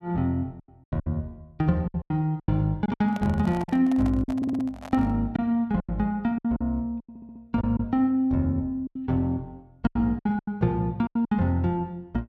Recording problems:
packet loss; 12% of the sound replaced, filled with silence
microphone handling noise; from 3 to 5 s; peak -8 dB vs average level
audio stuttering; at 4.5 s and at 7 s

